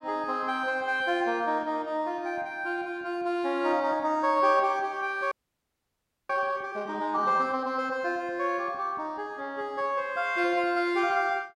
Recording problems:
audio freezing; at 5.5 s for 1 s

